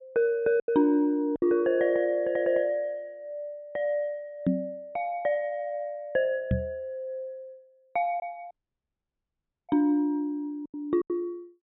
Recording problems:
treble cut off; nothing above 4 kHz
packet loss; 3% of the sound replaced, filled with silence
knock on the microphone; at 4.5 s and at 6.5 s; peak +7 dB vs average level
audio cutting out; at 8.5 s for 1 s

